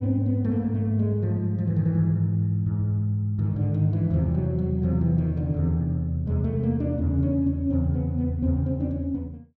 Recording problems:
none

